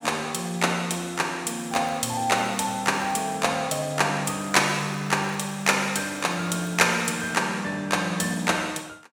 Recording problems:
crackling; from 1.5 to 3.5 s and from 4.5 to 7.5 s; loose cable, SNR 28 dB

